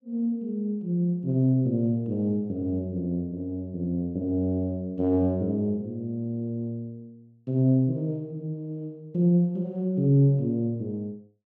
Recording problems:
none

